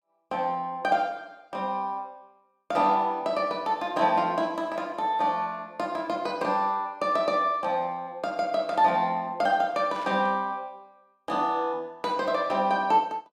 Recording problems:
static burst; at 10 s; peak -14 dB vs average level

